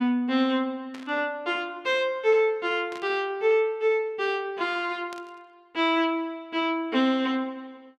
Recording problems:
burst of static; at 1 s, at 3 s and at 5 s; peak -12 dB vs average level

